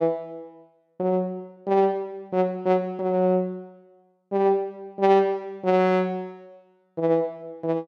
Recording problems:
none

